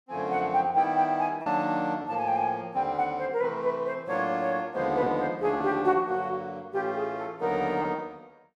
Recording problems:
packet loss; 2% of the sound replaced, filled with repeated pitch periods

